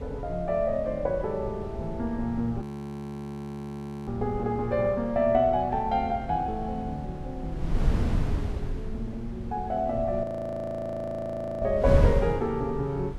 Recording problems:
wind on the microphone; below 130 Hz, SNR 5 dB
audio freezing; at 2.5 s for 1.5 s and at 10 s for 1.5 s

